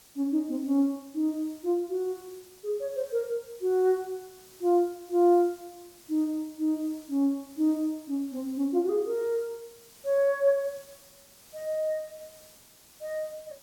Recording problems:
hiss; SNR 24 dB

